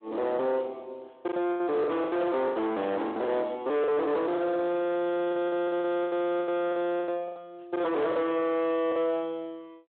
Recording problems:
phone line; 340 Hz to 3.1 kHz, Speex
distorted audio; soft clipping, signal-to-distortion ratio 5 dB
lost packets; 13% of the sound replaced, filled with the last packet

